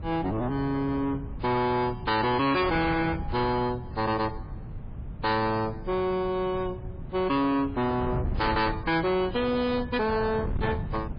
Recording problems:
lossy compression; MP3, log-spectral distance 3 dB, nothing above 4.2 kHz
distortion; soft clipping, signal-to-distortion ratio 8 dB
wind on the microphone; below 190 Hz, SNR 10 dB

